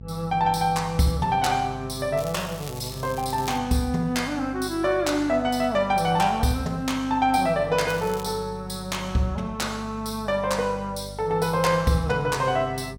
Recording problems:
hum; 50 Hz, harmonics up to 500 Hz, SNR 16 dB
crackle; from 2 to 3.5 s and at 8 s; loose cable, SNR 17 dB

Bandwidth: 17 kHz